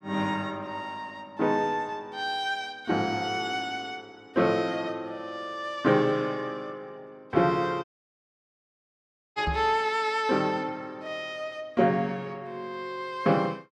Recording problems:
dropout; at 8 s for 1.5 s
knock on the microphone; at 9.5 s; peak 0 dB vs average level

